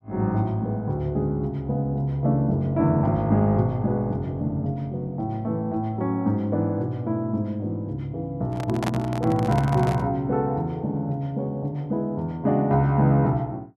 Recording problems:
handling noise; from 8.5 to 10 s; peak +1 dB vs average level

